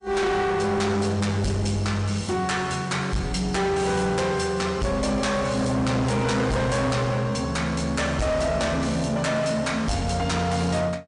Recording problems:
codec artefacts; MP3, log-spectral distance 3 dB, nothing above 8.2 kHz
distorted audio; hard clipping, signal-to-distortion ratio 8 dB

